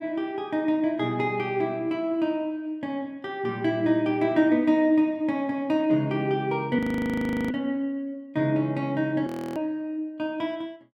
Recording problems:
audio freezing; at 7 s for 0.5 s and at 9.5 s

